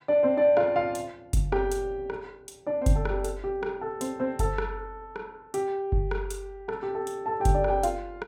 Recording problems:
none

